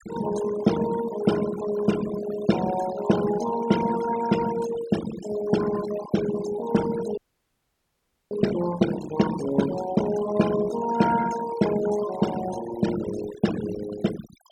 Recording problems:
denoising artefacts; signal-to-artefact ratio 11 dB
frozen audio; at 7 s for 1 s

